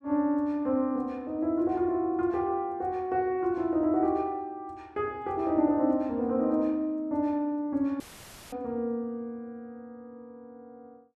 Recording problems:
dropout; at 8 s for 0.5 s; filled with static

